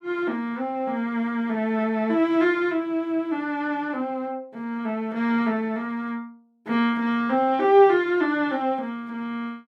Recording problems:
none

